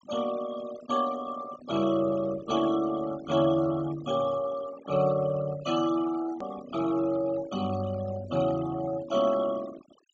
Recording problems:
treble missing; nothing above 8 kHz
denoising artefacts; signal-to-artefact ratio 16 dB
click at an edit; at 6.5 s

